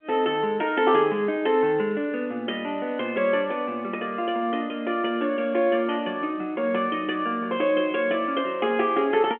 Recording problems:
telephone audio; 260 Hz to 3.3 kHz, G.711

